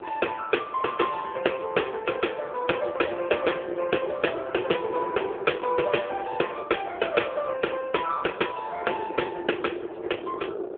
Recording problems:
telephone audio; 320 Hz to 3.4 kHz, AMR-NB
wind noise; below 510 Hz, SNR 11 dB

